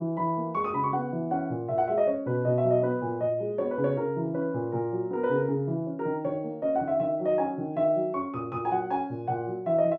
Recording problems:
none

